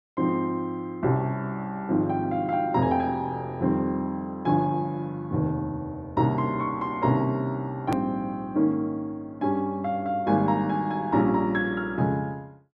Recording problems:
hard cut with a click; at 8 s

